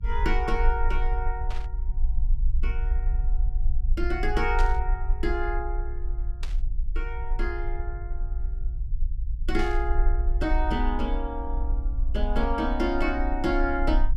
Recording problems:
rumble; below 54 Hz, strongest tone 30 Hz, SNR 0 dB
burst of static; 4 times, first at 1.5 s; peak -5 dB vs average level

